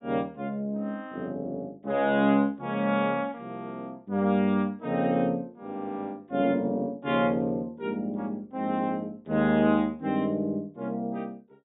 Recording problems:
treble cut off; nothing above 4 kHz

